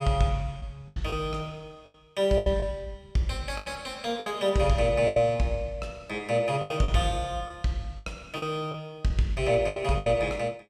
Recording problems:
lost packets; 9% of the sound replaced, filled with the last packet

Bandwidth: 15.5 kHz